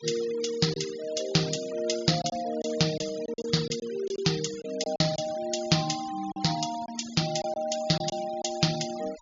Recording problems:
low-pass filter; nothing above 7.1 kHz
denoising artefacts; signal-to-artefact ratio 14 dB
packet loss; 6% of the sound replaced, filled with silence

